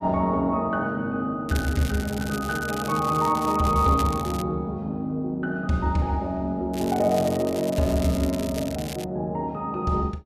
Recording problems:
crackle; from 1.5 to 4.5 s and from 6.5 to 9 s; loose cable, SNR 14 dB

